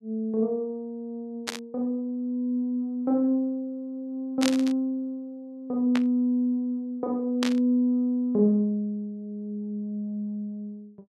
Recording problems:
burst of static; 4 times, first at 1.5 s; peak +2 dB vs average level

